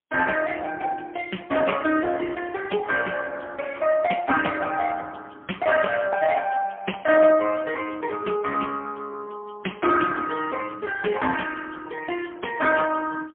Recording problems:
phone line; 220 Hz to 3.3 kHz, AMR-NB, then MP3

